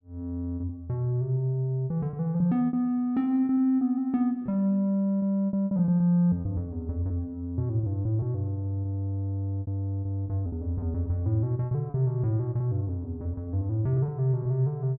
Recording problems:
packet loss; 9% of the sound replaced, filled with repeated pitch periods

